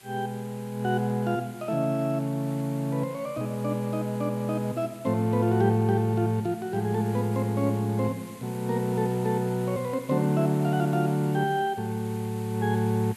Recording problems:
background hiss; SNR 21 dB

